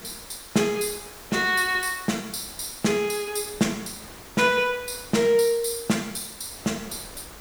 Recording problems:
hiss; SNR 18 dB
wind on the microphone; below 1.9 kHz, SNR 23 dB

